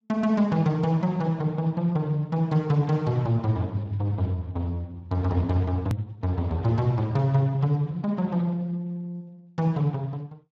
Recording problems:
lossy codec; Speex, log-spectral distance 2 dB, nothing above 15.6 kHz
click at an edit; at 6 s

